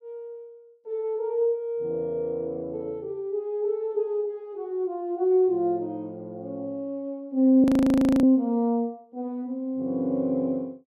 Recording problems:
audio freezing; at 7.5 s for 0.5 s

